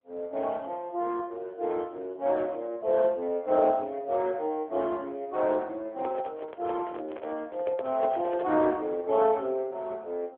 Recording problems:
phone line; 280 Hz to 3.5 kHz, AMR-NB
handling noise; from 6 to 8.5 s; peak -6 dB vs average level

